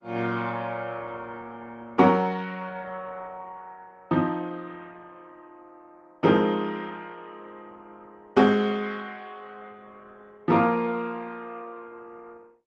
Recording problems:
lossy codec; Opus, log-spectral distance 4 dB

